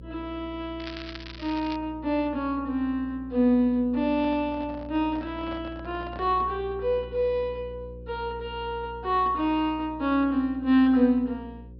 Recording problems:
treble missing; nothing above 5.5 kHz
hum; 60 Hz, harmonics up to 540 Hz, SNR 17 dB
crackle; at 1 s; loose cable, SNR 15 dB
microphone handling noise; from 4 to 6.5 s; peak -11 dB vs average level

